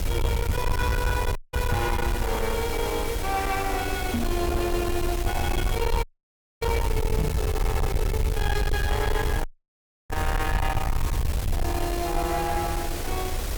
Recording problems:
distortion; soft clipping, signal-to-distortion ratio 8 dB
hiss; slope -4 dB per octave, SNR 6 dB
rumble; below 96 Hz, SNR 1 dB
audio cutting out; at 1.5 s, at 6 s for 0.5 s and at 9.5 s for 0.5 s
knock on the microphone; at 1.5 s, at 4 s and at 7 s; peak +6 dB vs average level

